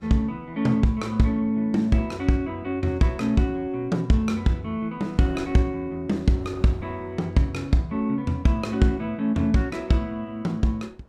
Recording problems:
wind noise; below 470 Hz, SNR 26 dB

